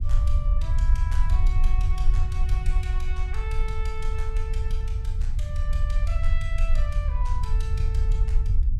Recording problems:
low-frequency rumble; below 58 Hz, SNR -13 dB

